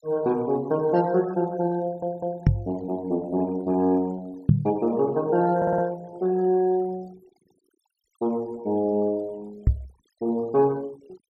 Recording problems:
noise reduction artefacts; signal-to-artefact ratio 25 dB
audio stuttering; at 2 s and at 5.5 s
knock on the microphone; at 2.5 s, at 4.5 s and at 9.5 s; peak +10 dB vs average level

